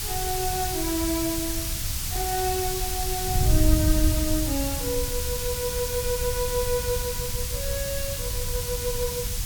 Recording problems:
background hiss; slope +3 dB per octave, SNR -1 dB
wind noise; below 92 Hz, SNR 1 dB

